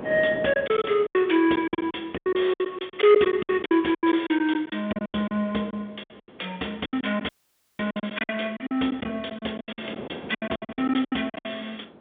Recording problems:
telephone audio; 260 Hz to 3.6 kHz, G.711
wind noise; below 620 Hz, SNR 19 dB
packet loss; 19% of the sound replaced, filled with silence
audio cutting out; at 7.5 s for 0.5 s

